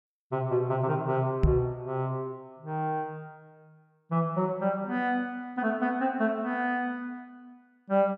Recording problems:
knock on the microphone; at 1.5 s; peak +9 dB vs average level

